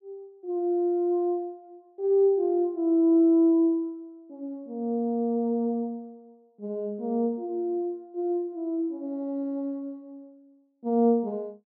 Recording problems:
none

